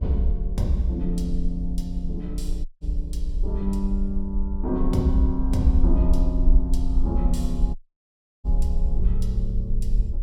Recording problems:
hum; 50 Hz, harmonics up to 600 Hz, SNR 21 dB
rumble; below 52 Hz, strongest tone 24 Hz, SNR -1 dB
audio cutting out; at 2.5 s and at 8 s for 0.5 s

